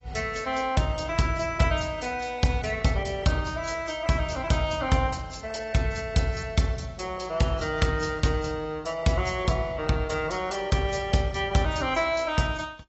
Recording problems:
codec artefacts; AAC, log-spectral distance 4 dB, nothing above 7.8 kHz

